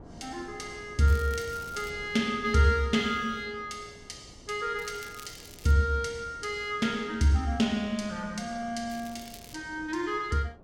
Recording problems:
wind noise; below 480 Hz, SNR 21 dB
crackling; at 1 s, at 5 s and at 9 s; loose cable, SNR 20 dB

